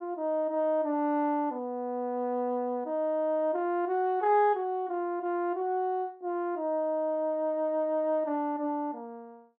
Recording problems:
none

